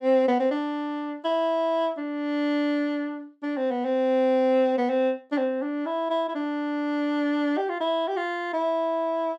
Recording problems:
none

